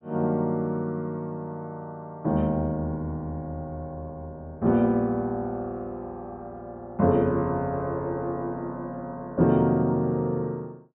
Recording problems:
low-pass filter; nothing above 4 kHz

